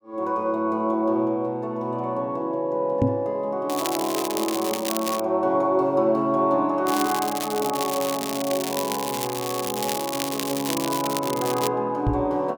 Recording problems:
microphone bump; at 3 s and at 12 s; peak +6 dB vs average level
crackle; from 3.5 to 5 s and from 7 to 12 s; loose cable, SNR 6 dB

